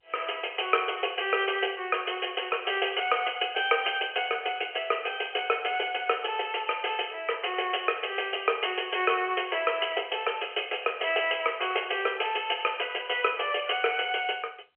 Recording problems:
telephone audio; 340 Hz to 3.3 kHz, G.711

